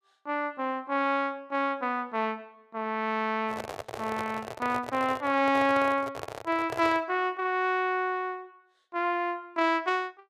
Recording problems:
handling noise; from 3.5 to 7 s; peak -3 dB vs average level

